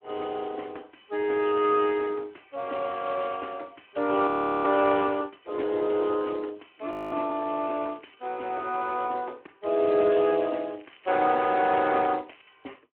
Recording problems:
phone line; 260 Hz to 2.9 kHz, Speex
frozen audio; at 4.5 s and at 7 s
crackle; at 7.5 s and from 11 to 12 s; loose cable, SNR 27 dB

